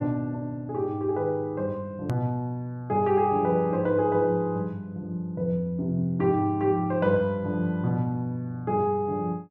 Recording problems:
hard cut with a click; at 2 s

